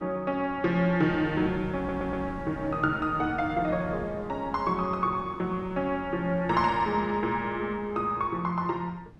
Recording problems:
wind on the microphone; below 290 Hz, SNR 16 dB
stutter; at 2 s

